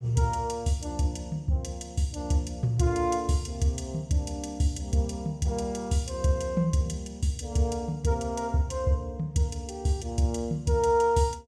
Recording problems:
none

